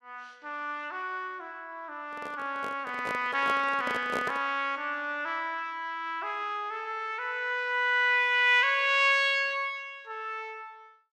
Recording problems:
handling noise; from 2 to 4.5 s; peak -2 dB vs average level

